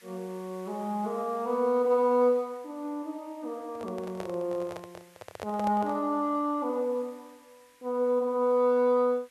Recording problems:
background hiss; SNR 29 dB
handling noise; from 3.5 to 6 s; peak -5 dB vs average level

